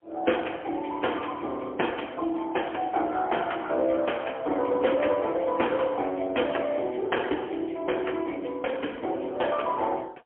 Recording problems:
telephone audio; 260 Hz to 3.2 kHz, AMR-NB, then MP3

